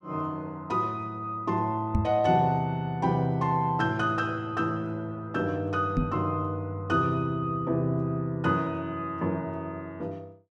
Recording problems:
knock on the microphone; at 2 s and at 6 s; peak +7 dB vs average level

